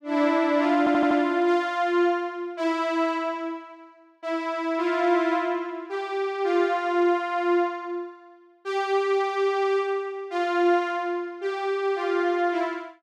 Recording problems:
stutter; at 1 s

